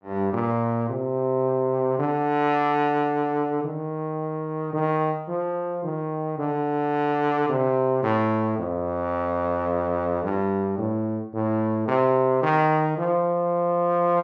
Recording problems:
none

